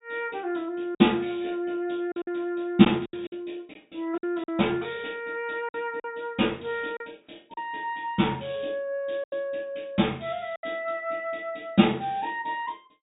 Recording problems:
treble cut off; nothing above 4 kHz
lost packets; 5% of the sound replaced, filled with silence

